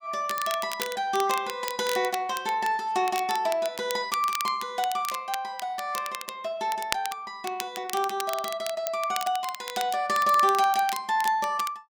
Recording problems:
crackling; vinyl, SNR 10 dB

